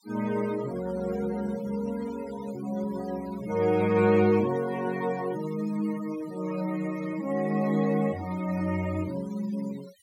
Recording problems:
denoising artefacts; signal-to-artefact ratio 18 dB

